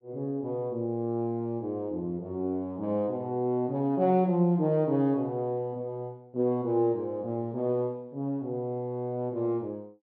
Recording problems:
none

